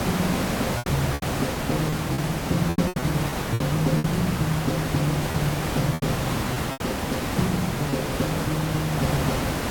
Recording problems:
electrical hum; 60 Hz, harmonics up to 660 Hz, SNR 28 dB
background hiss; slope -5 dB per octave, SNR 0 dB
lost packets; 8% of the sound replaced, filled with repeated pitch periods

